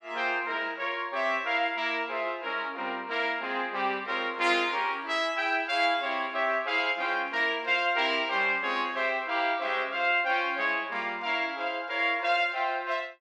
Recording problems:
none

